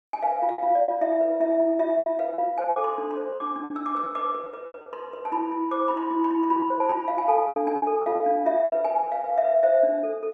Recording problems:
packet loss; 10% of the sound replaced, filled with repeated pitch periods

